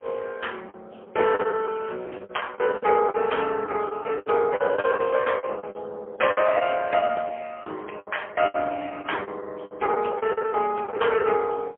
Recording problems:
phone line; 320 Hz to 3.3 kHz, AMR-NB, then MP3
packet loss; 16% of the sound replaced, filled with the last packet

